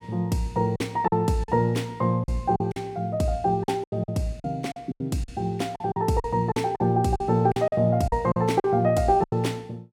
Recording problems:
lost packets; 11% of the sound replaced, filled with silence

